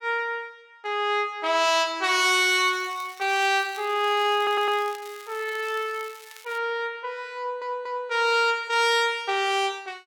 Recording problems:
crackling; from 2.5 to 6.5 s; loose cable, SNR 22 dB
stutter; at 4.5 s and at 7.5 s

